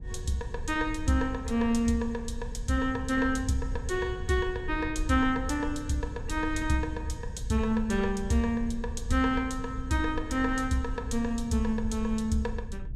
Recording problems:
low-frequency rumble; below 76 Hz, SNR 9 dB

